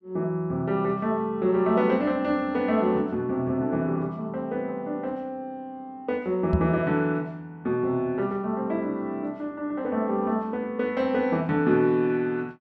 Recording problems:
microphone thump; at 6.5 s; peak +6 dB vs average level

